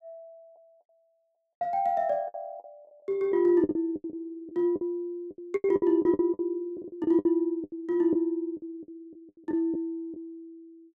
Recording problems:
packet loss; 13% of the sound replaced, filled with the last packet

